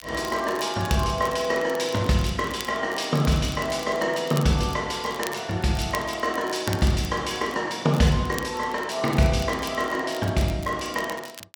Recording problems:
crackle; vinyl, SNR 17 dB

